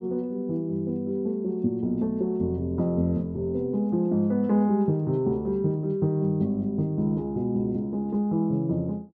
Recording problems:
none

